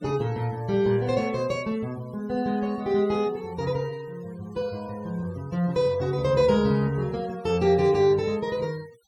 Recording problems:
denoising artefacts; signal-to-artefact ratio 24 dB

